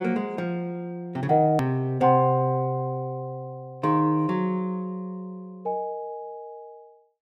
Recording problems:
hard cut with a click; at 1.5 s

